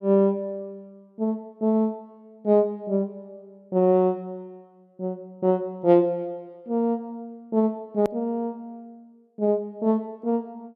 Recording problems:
edit click; at 8 s

